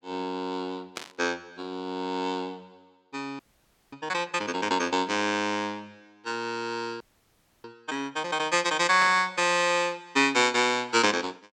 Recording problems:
burst of static; at 1 s and at 9 s; peak -4 dB vs average level
frozen audio; at 3.5 s for 0.5 s and at 7 s for 0.5 s

